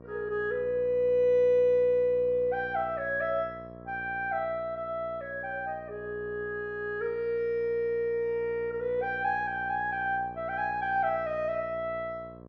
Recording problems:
electrical hum; 60 Hz, harmonics up to 1.3 kHz, SNR 18 dB

